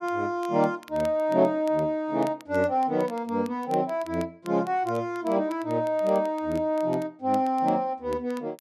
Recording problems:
crackling; vinyl, SNR 25 dB

